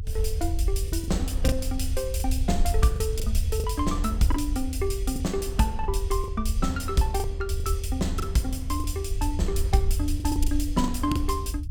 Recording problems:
low-frequency rumble; below 78 Hz, SNR 1 dB
lost packets; 7% of the sound replaced, filled with the last packet

